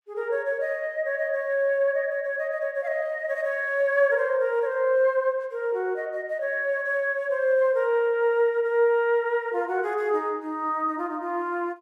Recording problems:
none

